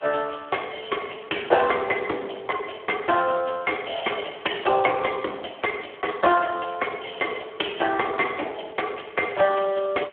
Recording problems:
phone line; 260 Hz to 3.3 kHz, Speex
hiss; SNR 28 dB

